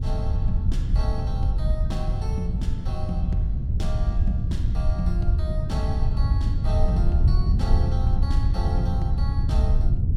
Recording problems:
wind on the microphone; below 92 Hz, SNR -9 dB

